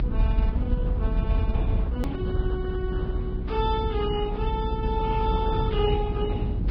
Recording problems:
lossy compression; Opus, then Vorbis, log-spectral distance 2 dB, nothing above 18.9 kHz
electrical hum; 60 Hz, harmonics up to 840 Hz, SNR 10 dB
low-frequency rumble; below 64 Hz, strongest tone 40 Hz, SNR -6 dB
hard cut with a click; at 2 s

